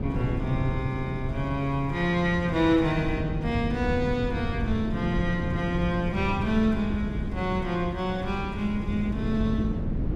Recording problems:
wind noise; below 210 Hz, SNR 4 dB

